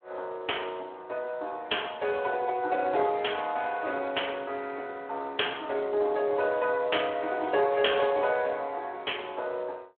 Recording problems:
telephone audio; 320 Hz to 3.3 kHz, Speex

